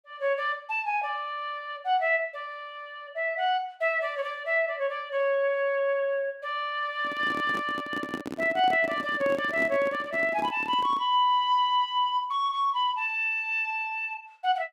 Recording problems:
handling noise; from 7 to 11 s; peak -3 dB vs average level

